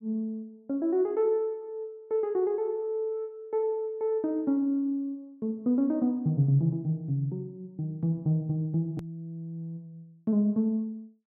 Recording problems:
edit click; at 9 s

